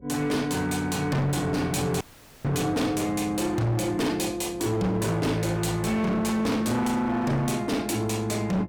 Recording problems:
distortion; hard clipping, signal-to-distortion ratio 8 dB
hum; 60 Hz, harmonics up to 540 Hz, SNR 24 dB
audio cutting out; at 2 s

